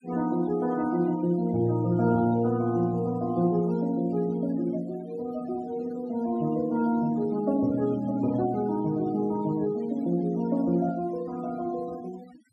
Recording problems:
noise reduction artefacts; signal-to-artefact ratio 22 dB

